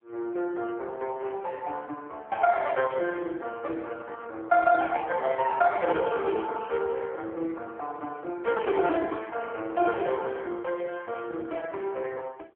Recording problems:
phone line; 300 Hz to 2.6 kHz, AMR-NB

